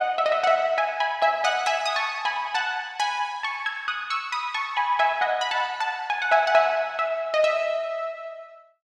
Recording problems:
none

